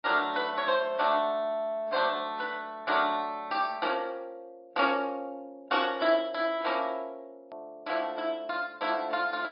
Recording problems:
treble missing; nothing above 4.8 kHz
lossy compression; AAC, log-spectral distance 2 dB
edit click; at 7.5 s

